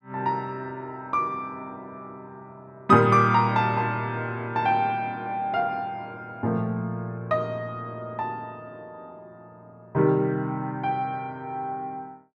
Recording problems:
none

